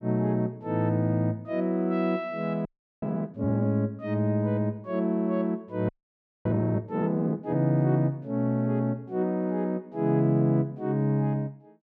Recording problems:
frozen audio; at 2.5 s and at 6 s for 0.5 s

